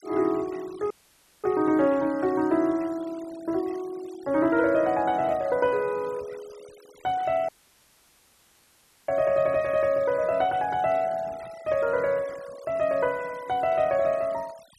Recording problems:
denoising artefacts; signal-to-artefact ratio 23 dB
audio cutting out; at 1 s for 0.5 s and at 7.5 s for 1.5 s

